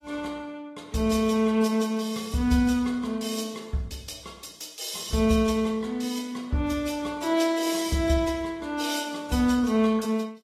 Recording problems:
codec artefacts; AAC, log-spectral distance 3 dB, nothing above 12.3 kHz

